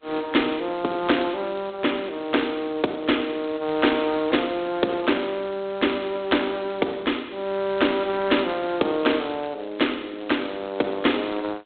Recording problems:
phone line; 240 Hz to 3.9 kHz, G.726

